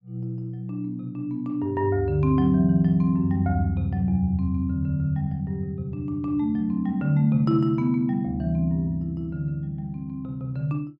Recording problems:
none

